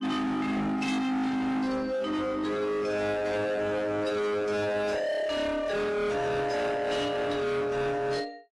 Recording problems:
lossy codec; AAC, log-spectral distance 2 dB, nothing above 11.3 kHz
distortion; hard clipping, signal-to-distortion ratio 6 dB

